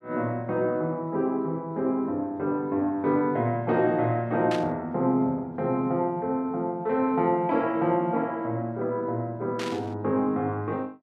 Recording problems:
burst of static; at 4.5 s and at 9.5 s; peak -5 dB vs average level

